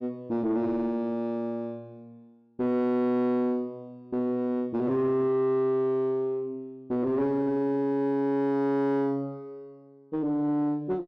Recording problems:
distortion; soft clipping, signal-to-distortion ratio 9 dB

